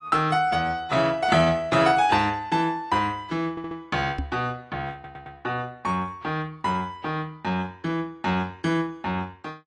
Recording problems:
lossy compression; AAC, log-spectral distance 2 dB
audio stuttering; at 3.5 s and at 5 s
microphone bump; at 4 s; peak -1 dB vs average level

